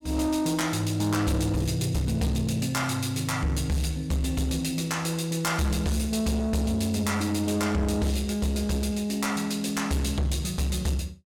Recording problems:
distorted audio; soft clipping, signal-to-distortion ratio 10 dB

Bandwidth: 17 kHz